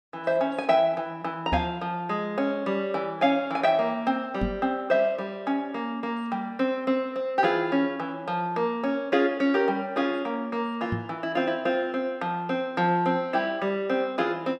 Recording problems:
knock on the microphone; at 1.5 s, at 4.5 s and at 11 s; peak +1 dB vs average level

